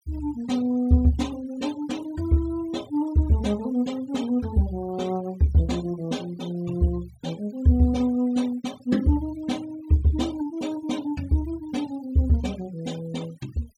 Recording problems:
denoising artefacts; signal-to-artefact ratio 21 dB

